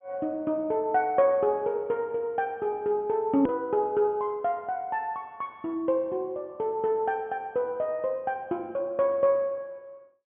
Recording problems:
treble cut off; nothing above 3.4 kHz
hard cut with a click; at 3.5 s

